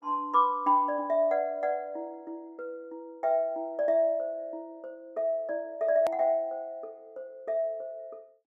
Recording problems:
click at an edit; at 6 s

